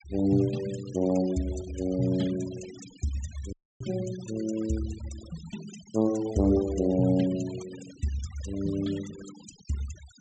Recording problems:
treble missing; nothing above 8 kHz
noise reduction artefacts; signal-to-artefact ratio 17 dB
dropout; at 3.5 s

